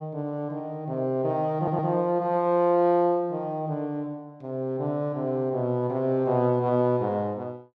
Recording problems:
stutter; at 1.5 s

